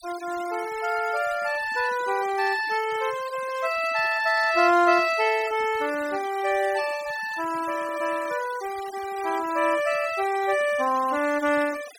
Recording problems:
noise reduction artefacts; signal-to-artefact ratio 17 dB

